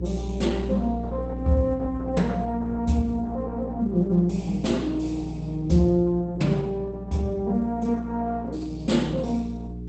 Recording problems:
lossy codec; Opus, log-spectral distance 2 dB, nothing above 8 kHz
hum; 60 Hz, harmonics up to 420 Hz, SNR 7 dB

